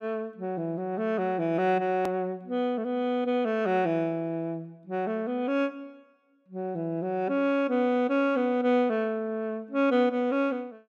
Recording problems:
hard cut with a click; at 2 s

